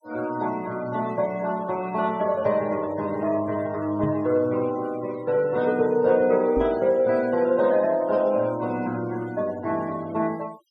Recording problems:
denoising artefacts; signal-to-artefact ratio 22 dB
knock on the microphone; at 4 s and at 6.5 s; peak -1 dB vs average level

